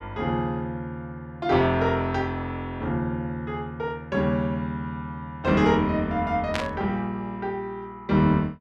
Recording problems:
static burst; at 6.5 s; peak +2 dB vs average level

